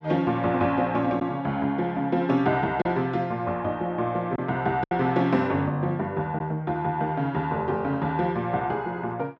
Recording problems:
packet loss; 1.5% of the sound replaced, filled with silence

